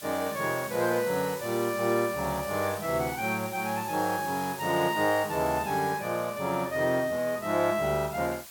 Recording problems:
background hiss; slope +1 dB per octave, SNR 13 dB

